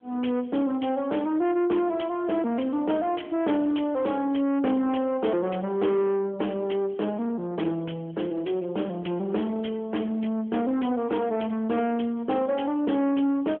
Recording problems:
telephone audio; 190 Hz to 3.2 kHz, AMR-NB
distortion; soft clipping, signal-to-distortion ratio 12 dB

